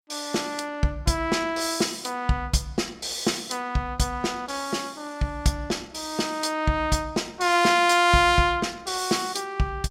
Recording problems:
none

